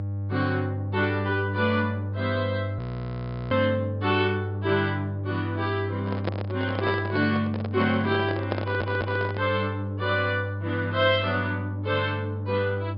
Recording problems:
treble cut off; nothing above 5.5 kHz
electrical hum; 50 Hz, harmonics up to 600 Hz, SNR 4 dB
frozen audio; at 3 s for 0.5 s
handling noise; from 6 to 9.5 s; peak +2 dB vs average level
stutter; at 8.5 s

